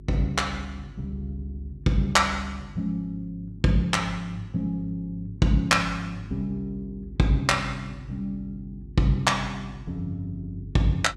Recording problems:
electrical hum; 50 Hz, harmonics up to 400 Hz, SNR 17 dB

